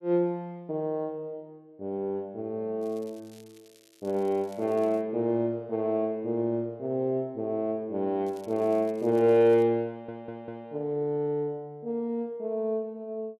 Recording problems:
crackle; from 3 to 5 s and from 8.5 to 9.5 s; loose cable, SNR 29 dB
audio stuttering; at 10 s

